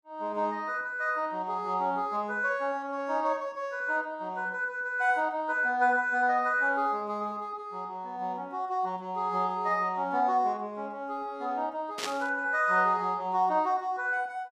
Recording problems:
burst of static; at 12 s; peak +1 dB vs average level

